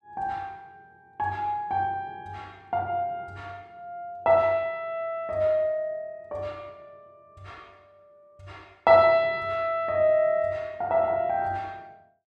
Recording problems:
none

